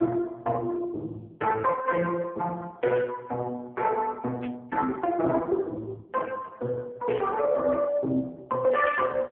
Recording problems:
phone line; 190 Hz to 2 kHz, AMR-NB
burst of static; at 3 s, at 4.5 s and at 7 s; peak -9 dB vs average level

